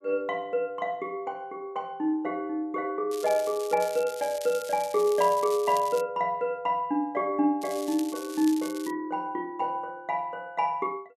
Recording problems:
crackling; from 3 to 6 s and from 7.5 to 9 s; loose cable, SNR 14 dB

